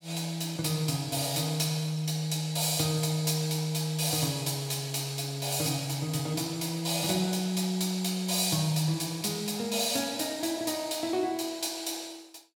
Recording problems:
none

